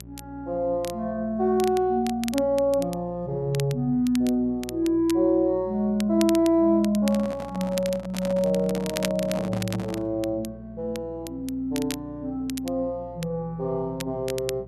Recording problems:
electrical hum; 60 Hz, harmonics up to 780 Hz, SNR 20 dB
crackling; vinyl, SNR 14 dB
handling noise; from 7 to 10 s; peak -4 dB vs average level

